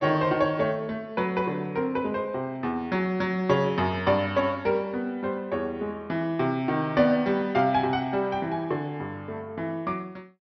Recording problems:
treble cut off; nothing above 5.9 kHz

